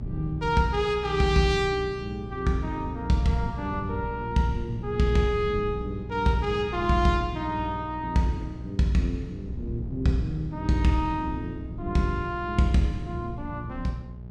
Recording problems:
hum; 60 Hz, harmonics up to 600 Hz, SNR 12 dB
wind noise; below 150 Hz, SNR 14 dB

